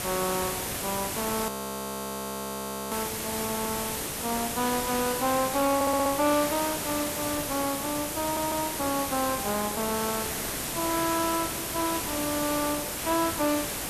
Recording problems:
distortion; soft clipping, signal-to-distortion ratio 8 dB
hiss; slope -4 dB per octave, SNR 3 dB
audio freezing; at 1.5 s for 1.5 s
stutter; at 6 s and at 8 s
static burst; at 6.5 s and at 13 s; peak -12 dB vs average level

